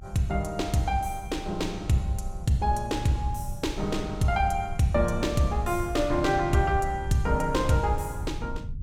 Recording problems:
rumble; below 84 Hz, SNR 11 dB

